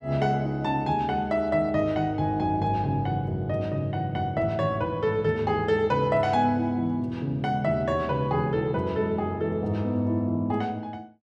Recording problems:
none

